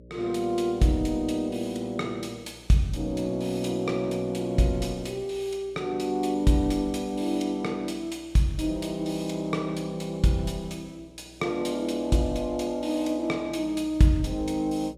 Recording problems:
hum; 60 Hz, harmonics up to 600 Hz, SNR 25 dB

